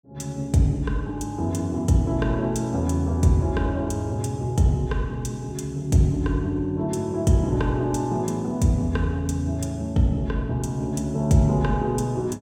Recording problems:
none

